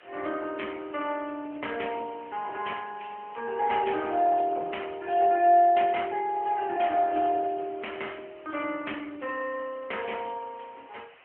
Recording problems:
phone line; 320 Hz to 3.1 kHz, AMR-NB
hiss; SNR 24 dB

